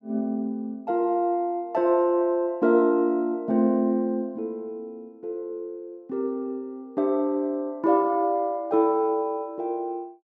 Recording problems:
none

